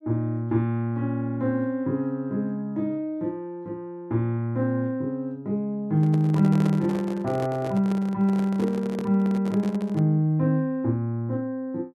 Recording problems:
handling noise; from 6 to 10 s; peak -3 dB vs average level

